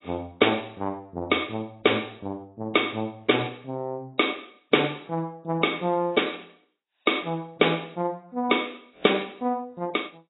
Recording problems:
lossy compression; AAC, log-spectral distance 7 dB, nothing above 3.8 kHz

